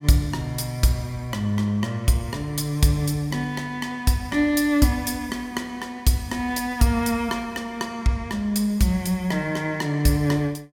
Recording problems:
none

